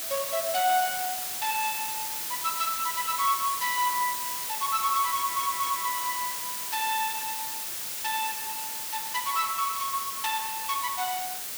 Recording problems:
background hiss; slope +1 dB per octave, SNR 1 dB
stutter; at 5 s

